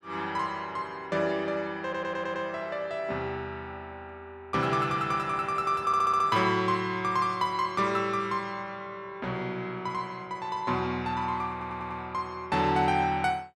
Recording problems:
stutter; at 2 s, at 6 s and at 12 s

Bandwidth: 13 kHz